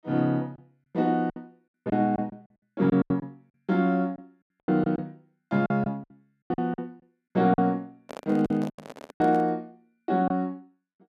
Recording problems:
lost packets; 13% of the sound replaced, filled with silence
handling noise; from 8 to 9.5 s; peak -9 dB vs average level

